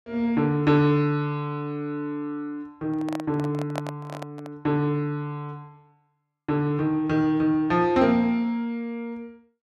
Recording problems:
handling noise; from 3 to 4.5 s; peak -2 dB vs average level

